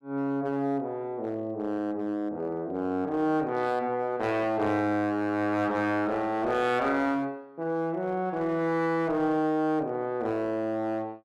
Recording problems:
distorted audio; hard clipping, uneven, signal-to-distortion ratio 11 dB

